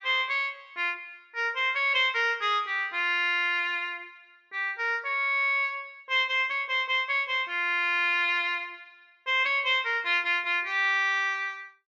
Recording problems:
treble missing; nothing above 8 kHz

